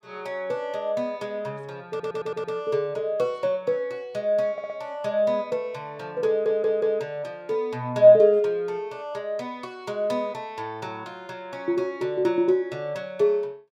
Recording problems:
stutter; at 2 s, at 4.5 s and at 6.5 s

